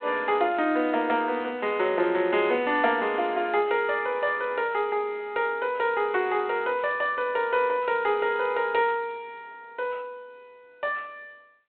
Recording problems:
phone line; 260 Hz to 3.6 kHz, G.726

